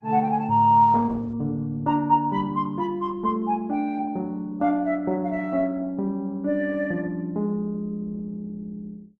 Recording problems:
lossy codec; Opus, log-spectral distance 2 dB

